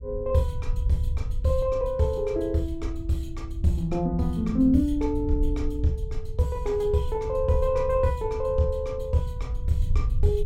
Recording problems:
rumble; below 74 Hz, SNR 7 dB

